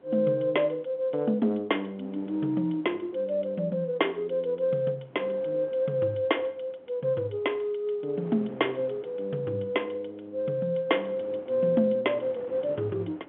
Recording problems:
telephone audio; 170 Hz to 3.5 kHz, G.711
wind on the microphone; below 710 Hz, SNR 22 dB

